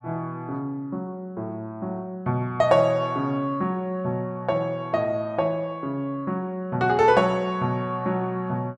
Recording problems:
none

